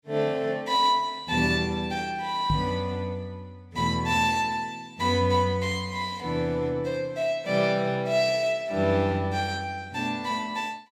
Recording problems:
microphone thump; at 2.5 s; peak +3 dB vs average level

